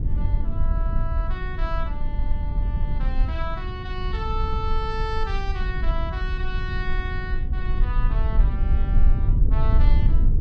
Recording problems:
rumble; below 60 Hz, strongest tone 20 Hz, SNR -8 dB

